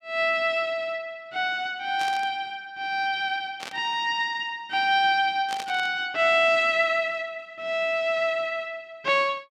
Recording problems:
burst of static; at 2 s, at 3.5 s and at 5.5 s; peak -6 dB vs average level

